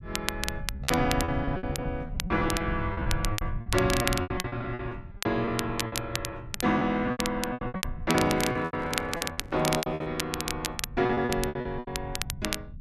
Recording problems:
low-frequency rumble; below 120 Hz, SNR 9 dB
crackle; vinyl, SNR 5 dB
lost packets; 18% of the sound replaced, filled with repeated pitch periods
handling noise; from 8 to 10 s; peak -7 dB vs average level

